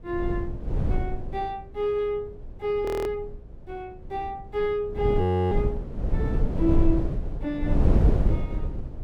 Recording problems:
wind on the microphone; below 130 Hz, SNR -2 dB
audio freezing; at 3 s and at 5 s

